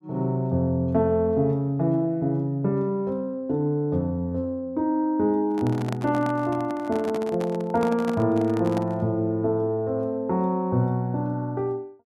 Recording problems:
handling noise; from 5.5 to 9 s; peak -4 dB vs average level

